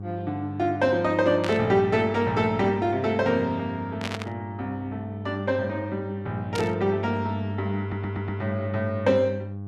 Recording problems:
hum; 50 Hz, harmonics up to 800 Hz, SNR 8 dB
burst of static; at 1.5 s, at 4 s and at 6.5 s; peak -2 dB vs average level
stutter; at 8 s

